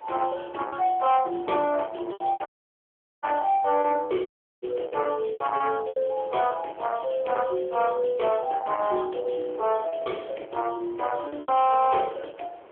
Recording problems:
telephone audio; 300 Hz to 3.3 kHz, AMR-NB
distorted audio; soft clipping, signal-to-distortion ratio 11 dB
wind noise; below 1 kHz, SNR 22 dB
lost packets; 6% of the sound replaced, filled with repeated pitch periods
dropout; at 2.5 s for 1 s and at 4.5 s

